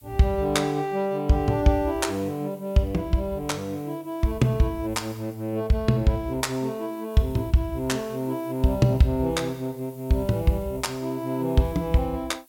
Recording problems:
hiss; slope 0 dB per octave, SNR 26 dB

